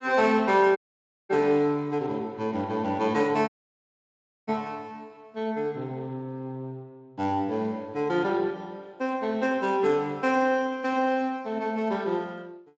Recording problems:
lossy compression; Speex, log-spectral distance 2 dB, nothing above 7.3 kHz
dropout; at 1 s for 0.5 s and at 3.5 s for 1 s

